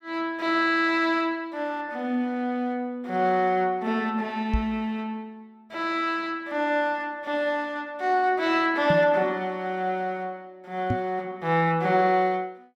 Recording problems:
microphone thump; at 4.5 s, at 9 s and at 11 s; peak +3 dB vs average level

